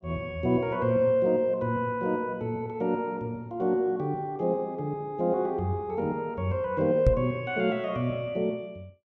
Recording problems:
knock on the microphone; at 7 s; peak +8 dB vs average level

